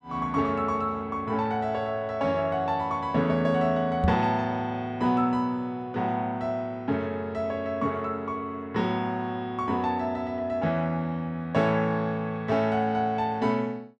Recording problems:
microphone thump; at 4 s; peak +5 dB vs average level

